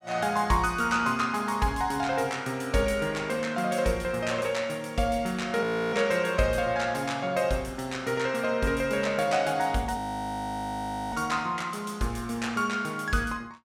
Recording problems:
frozen audio; at 5.5 s and at 10 s for 1 s

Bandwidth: 16.5 kHz